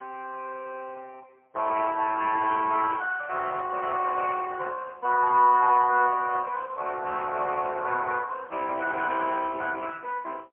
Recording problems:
phone line; 410 Hz to 2.9 kHz, AMR-NB, then MP3

